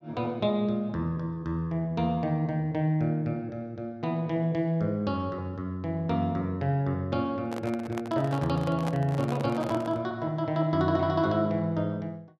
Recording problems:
handling noise; from 7.5 to 10 s; peak -2 dB vs average level

